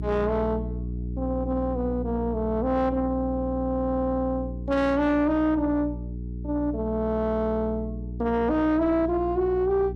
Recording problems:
distorted audio; soft clipping, signal-to-distortion ratio 11 dB
hum; 60 Hz, harmonics up to 420 Hz, SNR 8 dB

